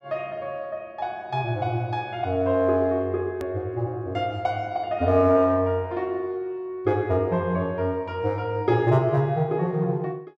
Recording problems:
click at an edit; at 3.5 s

